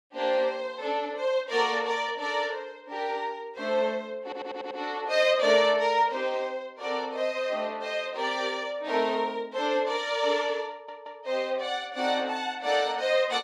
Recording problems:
audio stuttering; at 4 s and at 11 s

